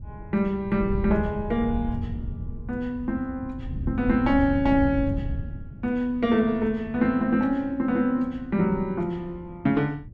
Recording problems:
wind noise; below 130 Hz, SNR 9 dB

